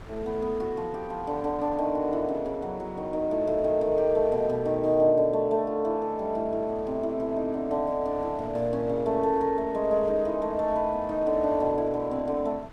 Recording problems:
wind on the microphone; below 690 Hz, SNR 21 dB

